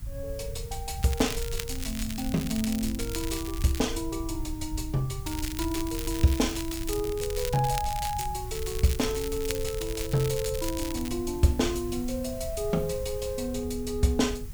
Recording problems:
background hiss; slope -1 dB per octave, SNR 18 dB
rumble; below 88 Hz, SNR 9 dB
crackle; from 1 to 4 s, from 5.5 to 8.5 s and from 8.5 to 11 s; loose cable, SNR 9 dB

